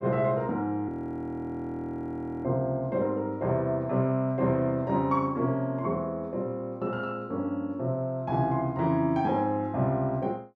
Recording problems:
frozen audio; at 1 s for 1.5 s

